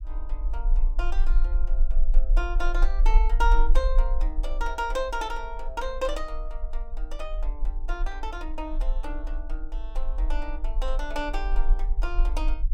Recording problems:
low-frequency rumble; below 36 Hz, strongest tone 18 Hz, SNR -4 dB

